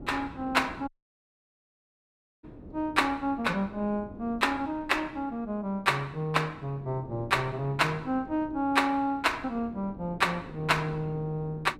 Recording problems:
wind on the microphone; below 360 Hz, SNR 17 dB
dropout; at 1 s for 1.5 s

